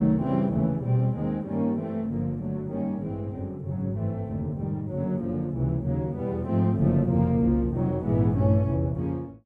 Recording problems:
none

